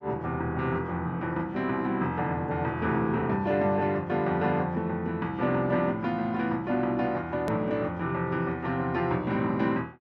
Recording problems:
click at an edit; at 7.5 s

